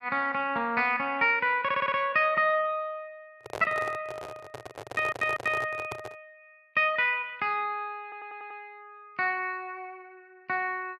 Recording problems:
audio stuttering; at 1.5 s, at 5 s and at 8 s
microphone handling noise; from 3.5 to 6 s; peak -4 dB vs average level

